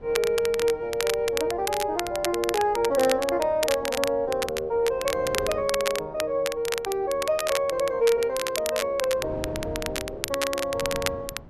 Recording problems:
wind noise; below 360 Hz, SNR 19 dB
crackle; vinyl, SNR 7 dB

